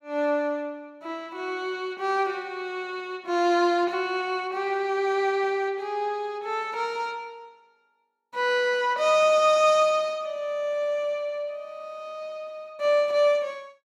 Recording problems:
none

